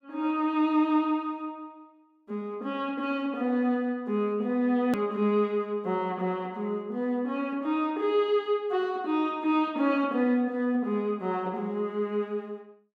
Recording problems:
hard cut with a click; at 5 s

